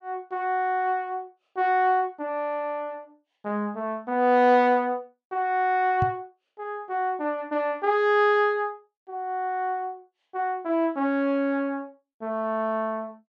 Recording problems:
microphone thump; at 6 s; peak +1 dB vs average level

